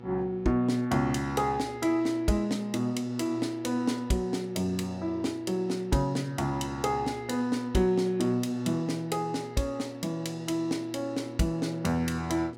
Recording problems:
hum; 60 Hz, harmonics up to 1.8 kHz, SNR 15 dB

